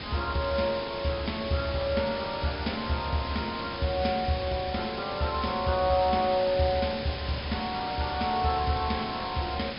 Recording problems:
treble cut off; nothing above 5.2 kHz
background hiss; slope -2 dB per octave, SNR 7 dB

